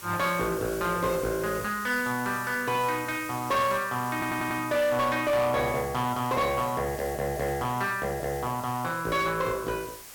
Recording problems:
distortion; soft clipping, signal-to-distortion ratio 11 dB
background hiss; slope 0 dB per octave, SNR 14 dB
stutter; at 4 s

